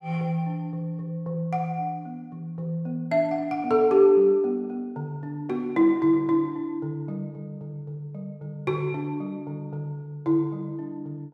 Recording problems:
none

